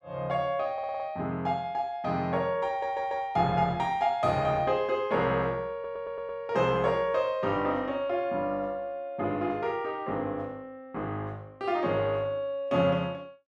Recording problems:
audio stuttering; at 0.5 s, at 2.5 s and at 5.5 s

